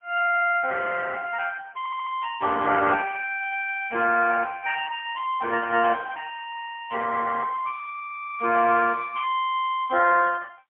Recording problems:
phone line; 260 Hz to 3.5 kHz, AMR-NB, then MP3
audio stuttering; at 2 s

